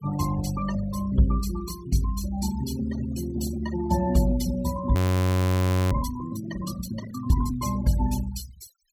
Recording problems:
denoising artefacts; signal-to-artefact ratio 15 dB
frozen audio; at 5 s for 1 s

